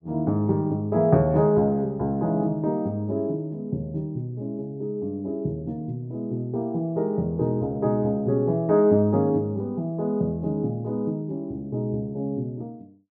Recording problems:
none

